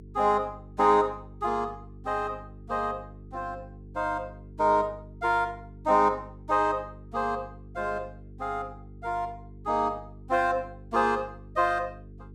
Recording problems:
hum; 50 Hz, harmonics up to 450 Hz, SNR 18 dB

